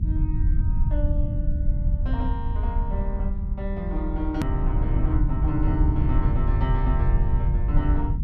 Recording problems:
hum; 60 Hz, harmonics up to 360 Hz, SNR 19 dB
rumble; below 80 Hz, SNR -6 dB
edit click; at 4.5 s

